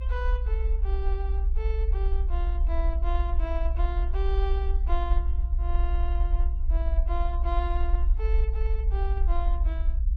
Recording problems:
rumble; below 60 Hz, SNR -10 dB

